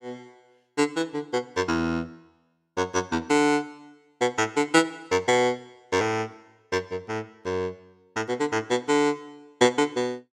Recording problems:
none

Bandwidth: 16 kHz